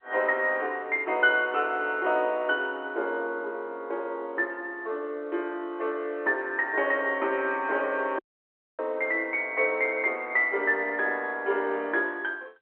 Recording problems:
phone line; 320 Hz to 3.2 kHz, G.711
dropout; at 8 s for 0.5 s

